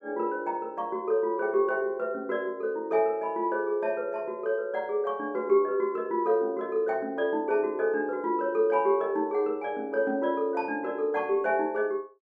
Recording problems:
none

